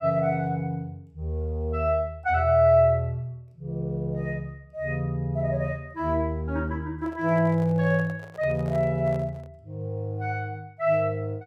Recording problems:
microphone handling noise; from 7 to 9.5 s; peak -11 dB vs average level

